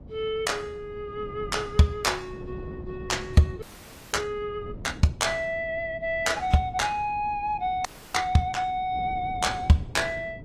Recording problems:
codec artefacts; AAC, log-spectral distance 2 dB
wind on the microphone; below 260 Hz, SNR 16 dB
audio freezing; at 3.5 s for 0.5 s and at 8 s

